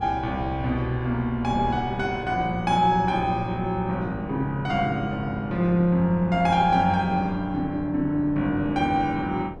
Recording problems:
wind on the microphone; below 370 Hz, SNR 15 dB

